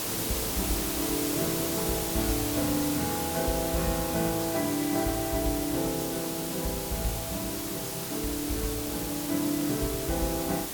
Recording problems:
background hiss; slope -3 dB per octave, SNR 1 dB

